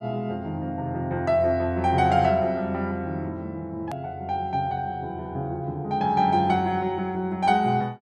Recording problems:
edit click; at 4 s

